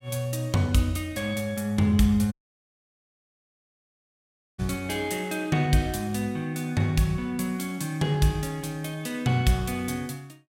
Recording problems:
dropout; at 2.5 s for 2.5 s

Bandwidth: 16 kHz